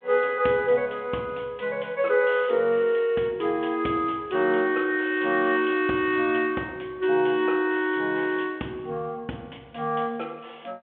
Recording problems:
telephone audio; 260 Hz to 3.4 kHz, G.726

